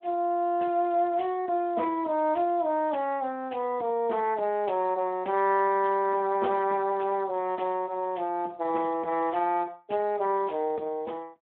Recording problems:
telephone audio; 280 Hz to 3 kHz, Speex

